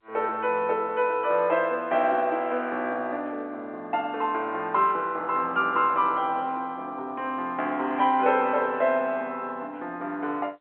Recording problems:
phone line; 300 Hz to 3.4 kHz, G.711

